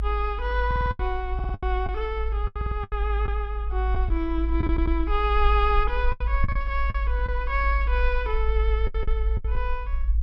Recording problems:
rumble; below 54 Hz, strongest tone 52 Hz, SNR -1 dB
lost packets; 9% of the sound replaced, filled with the last packet
audio stuttering; 4 times, first at 0.5 s

